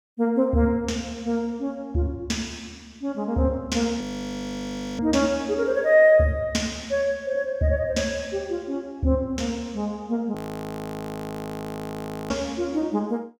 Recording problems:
audio freezing; at 4 s for 1 s and at 10 s for 2 s

